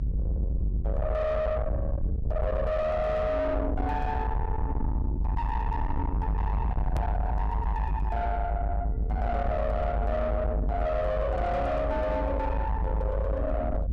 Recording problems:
distorted audio; soft clipping, signal-to-distortion ratio 6 dB
low-frequency rumble; below 160 Hz, strongest tone 50 Hz, SNR 0 dB
hard cut with a click; at 7 s

